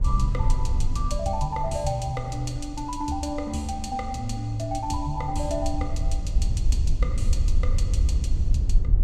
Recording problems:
wind noise; below 66 Hz, SNR -3 dB

